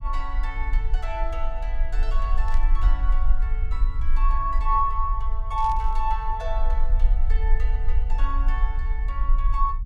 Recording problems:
rumble; below 40 Hz, SNR -4 dB
burst of static; at 2.5 s and at 5.5 s; peak -12 dB vs average level

